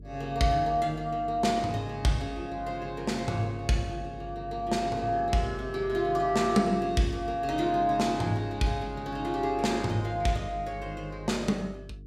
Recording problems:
mains hum; 50 Hz, harmonics up to 450 Hz, SNR 17 dB

